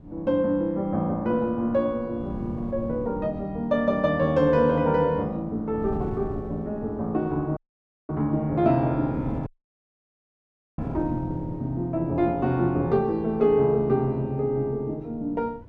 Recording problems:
wind noise; below 200 Hz, SNR 16 dB
audio cutting out; at 7.5 s for 0.5 s and at 9.5 s for 1.5 s

